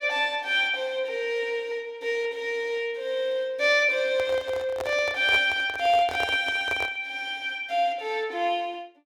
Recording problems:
microphone handling noise; from 4 to 7 s; peak -4 dB vs average level

